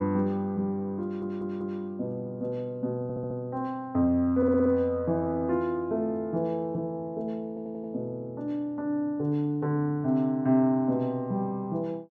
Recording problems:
audio stuttering; 4 times, first at 1 s

